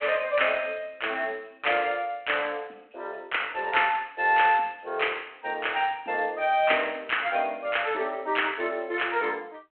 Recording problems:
telephone audio; 260 Hz to 3.4 kHz, G.726

